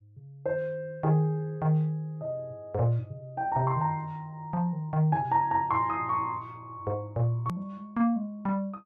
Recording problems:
hard cut with a click; at 7.5 s

